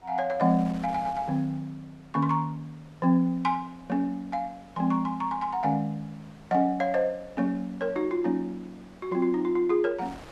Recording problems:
wind noise; below 1.6 kHz, SNR 24 dB

